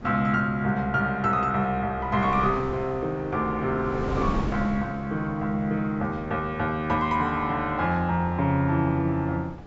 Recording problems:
low-pass filter; nothing above 8 kHz
wind noise; below 460 Hz, SNR 13 dB

